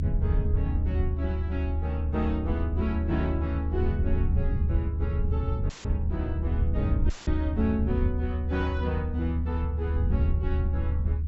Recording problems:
low-pass filter; nothing above 7.7 kHz
low-frequency rumble; below 78 Hz, strongest tone 76 Hz, SNR -5 dB
audio cutting out; at 5.5 s and at 7 s; filled with static

